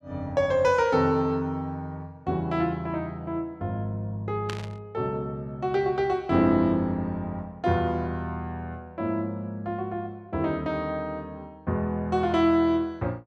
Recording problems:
static burst; at 4.5 s; peak -4 dB vs average level

